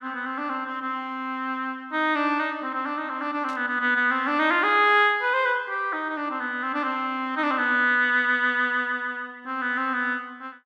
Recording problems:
static burst; at 3.5 s; peak -15 dB vs average level

